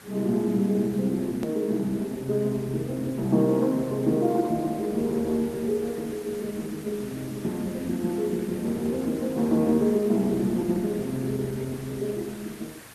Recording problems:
lossy compression; Opus, log-spectral distance 5 dB, nothing above 13.1 kHz
background hiss; SNR 19 dB
click at an edit; at 1.5 s

